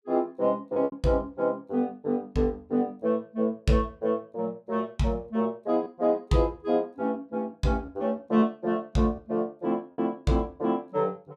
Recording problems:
packet loss; 2% of the sound replaced, filled with repeated pitch periods

